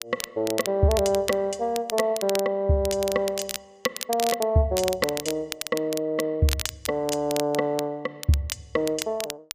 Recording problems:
crackle; vinyl, SNR 8 dB

